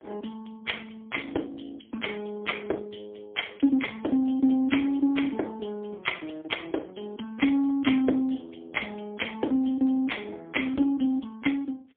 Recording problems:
phone line; 220 Hz to 3.3 kHz, AMR-NB, then MP3

